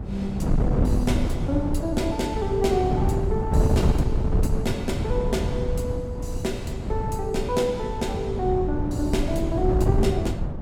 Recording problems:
wind on the microphone; below 180 Hz, SNR -1 dB

